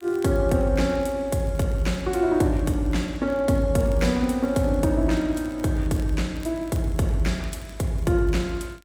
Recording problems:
crackling; vinyl, SNR 29 dB

